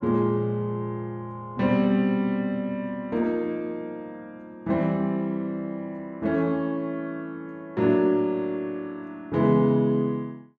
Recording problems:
none

